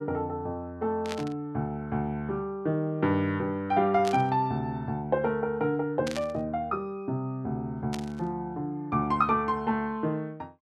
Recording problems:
burst of static; 4 times, first at 1 s; peak -3 dB vs average level

